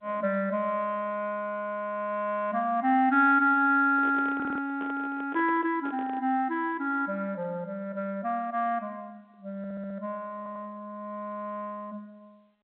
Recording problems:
telephone audio; 280 Hz to 3.6 kHz, G.711
handling noise; from 4 to 6 s; peak -10 dB vs average level
audio stuttering; at 4.5 s, at 9.5 s and at 10 s

